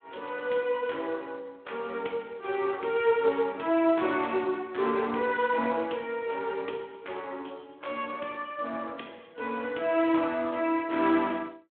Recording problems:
telephone audio; 260 Hz to 3.5 kHz, Speex

